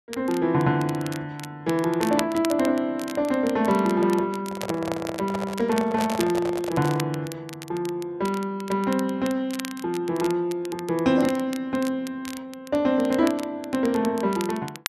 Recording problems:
crackling; vinyl, SNR 15 dB
handling noise; from 4.5 to 7 s; peak -1 dB vs average level

